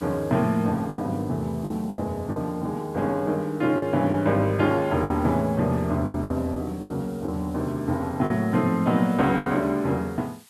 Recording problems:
hiss; slope +2 dB per octave, SNR 27 dB
lost packets; 7% of the sound replaced, filled with the last packet

